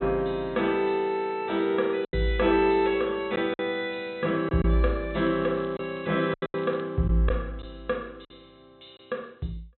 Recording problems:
treble cut off; nothing above 4 kHz
lost packets; 5% of the sound replaced, filled with silence
crackle; from 5 to 7 s; loose cable, SNR 27 dB

